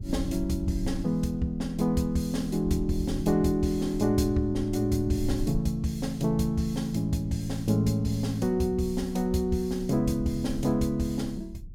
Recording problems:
low-frequency rumble; below 86 Hz, SNR 13 dB

